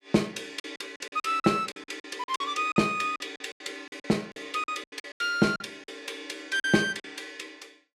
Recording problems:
lost packets; 15% of the sound replaced, filled with silence

